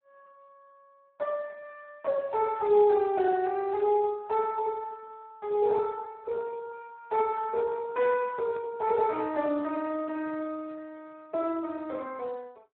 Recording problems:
phone line; 280 Hz to 3 kHz, Speex

